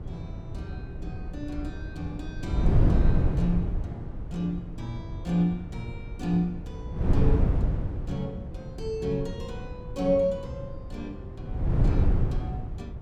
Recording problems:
wind noise; below 140 Hz, SNR -2 dB

